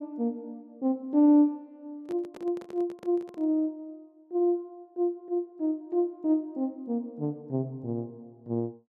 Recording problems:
handling noise; from 2 to 3.5 s; peak -12 dB vs average level

